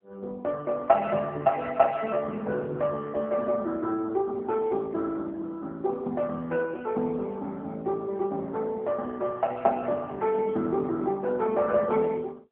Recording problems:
telephone audio; 220 Hz to 2 kHz, AMR-NB

